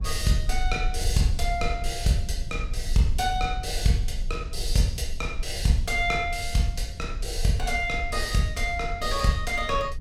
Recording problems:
low-frequency rumble; below 56 Hz, SNR 7 dB

